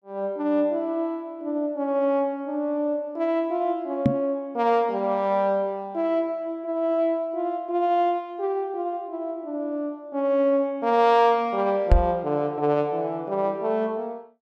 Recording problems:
microphone thump; at 4 s and at 12 s; peak +10 dB vs average level

